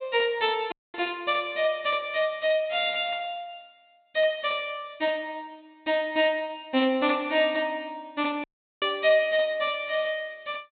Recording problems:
treble missing; nothing above 4 kHz
dropout; at 0.5 s and at 8.5 s

